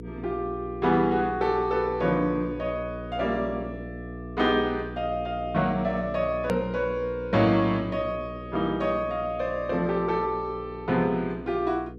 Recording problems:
electrical hum; 60 Hz, harmonics up to 480 Hz, SNR 12 dB
edit click; at 6.5 s

